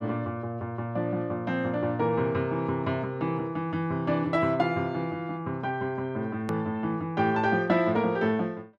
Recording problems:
hard cut with a click; at 6.5 s

